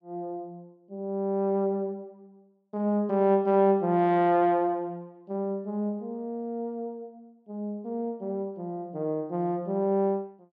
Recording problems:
none

